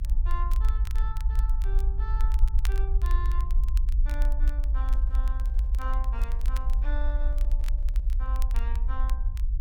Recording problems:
low-frequency rumble; below 52 Hz, strongest tone 28 Hz, SNR -14 dB
crackling; vinyl, SNR 9 dB
handling noise; from 4.5 to 8.5 s; peak -10 dB vs average level

